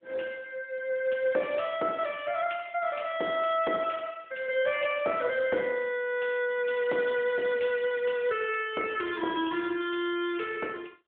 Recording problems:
telephone audio; 280 Hz to 3.4 kHz, AMR-NB

